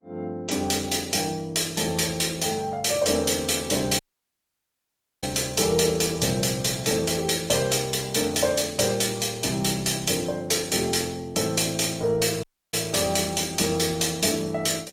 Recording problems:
lossy codec; Opus, log-spectral distance 6 dB
dropout; at 4 s for 1 s and at 12 s

